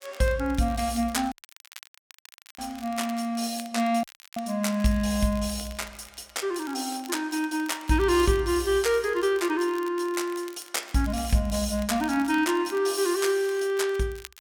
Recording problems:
crackling; vinyl, SNR 21 dB
dropout; at 1.5 s for 1.5 s and at 4 s

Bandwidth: 18 kHz